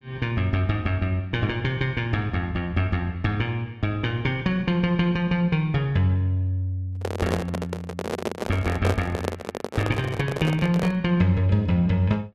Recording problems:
handling noise; from 7 to 11 s; peak +3 dB vs average level

